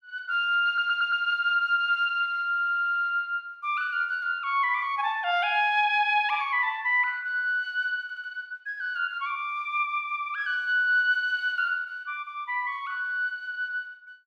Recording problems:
stutter; at 0.5 s, at 2.5 s and at 8 s

